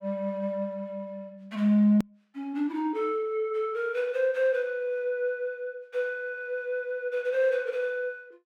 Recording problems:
click at an edit; at 2 s

